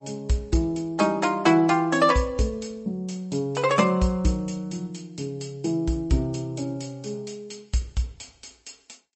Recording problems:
codec artefacts; MP3, log-spectral distance 4 dB, nothing above 7.8 kHz

